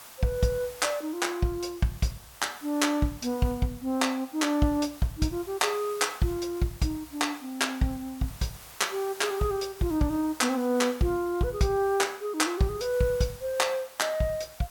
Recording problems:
background hiss; SNR 18 dB

